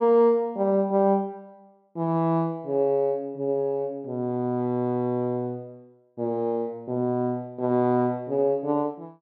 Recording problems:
none

